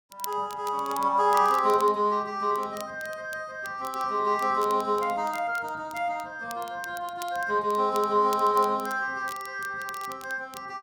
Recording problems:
crackling; vinyl, SNR 19 dB

